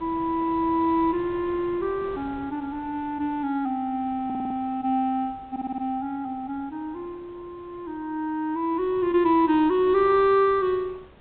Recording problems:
treble cut off; nothing above 4 kHz
wind on the microphone; below 860 Hz, SNR 22 dB
stutter; at 4.5 s and at 5.5 s

